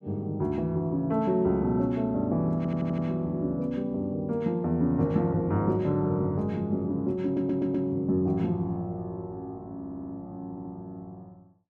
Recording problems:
stutter; 4 times, first at 2.5 s

